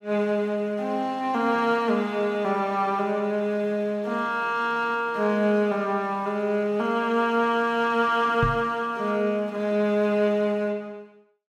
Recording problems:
knock on the microphone; at 8.5 s; peak +3 dB vs average level

